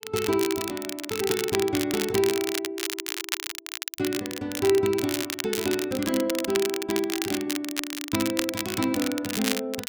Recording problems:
crackling; vinyl, SNR 4 dB

